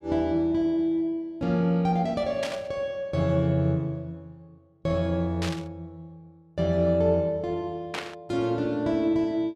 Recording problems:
static burst; at 2.5 s, at 5.5 s and at 8 s; peak -2 dB vs average level

